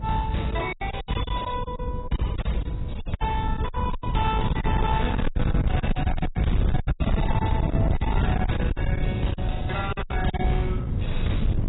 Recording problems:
lossy compression; AAC, log-spectral distance 3 dB, nothing above 3.8 kHz
distorted audio; soft clipping, signal-to-distortion ratio 7 dB
wind noise; below 150 Hz, SNR -1 dB
packet loss; 14% of the sound replaced, filled with silence

